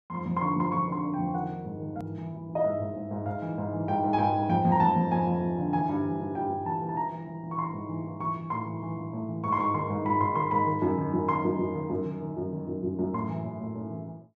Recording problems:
edit click; at 2 s

